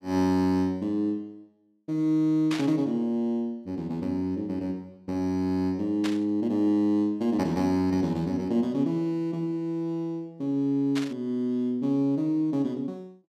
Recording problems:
static burst; at 2.5 s, at 6 s and at 11 s; peak -3 dB vs average level

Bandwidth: 14.5 kHz